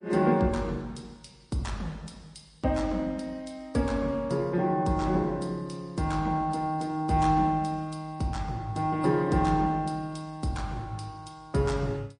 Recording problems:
lossy codec; MP3, log-spectral distance 2 dB, nothing above 9.5 kHz

